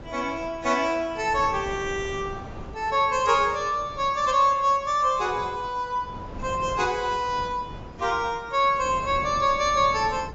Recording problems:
lossy codec; AAC, log-spectral distance 2 dB
wind on the microphone; below 500 Hz, SNR 17 dB

